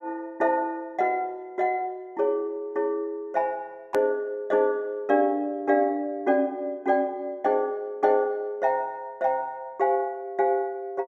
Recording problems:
hard cut with a click; at 4 s

